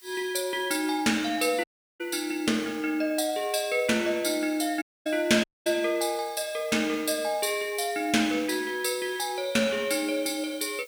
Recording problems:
hiss; slope +4 dB per octave, SNR 24 dB
audio cutting out; at 1.5 s, at 5 s and at 5.5 s

